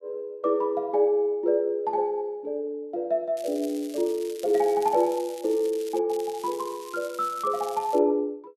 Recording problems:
crackle; from 3.5 to 6 s and from 6 to 8 s; loose cable, SNR 19 dB

